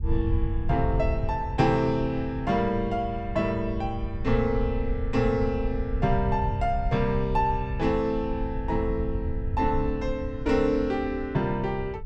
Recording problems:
low-frequency rumble; below 84 Hz, SNR 6 dB

